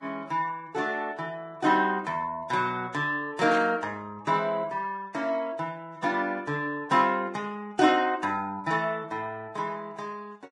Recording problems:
codec artefacts; Vorbis, log-spectral distance 2 dB, nothing above 11 kHz
burst of static; at 3.5 s; peak -6 dB vs average level

